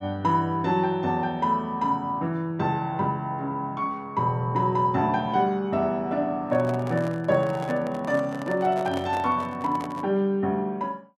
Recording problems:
microphone handling noise; from 6.5 to 10 s; peak -6 dB vs average level

